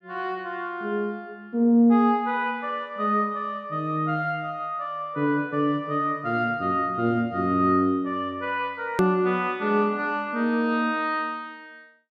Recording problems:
hard cut with a click; at 9 s

